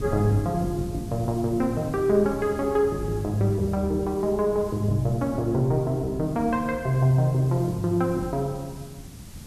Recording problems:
background hiss; SNR 24 dB
wind noise; below 180 Hz, SNR 15 dB

